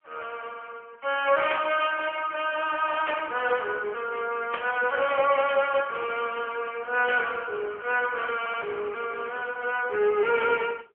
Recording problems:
phone line; 340 Hz to 3.2 kHz, AMR-NB
burst of static; 4 times, first at 1.5 s; peak -1 dB vs average level
audio stuttering; at 8.5 s

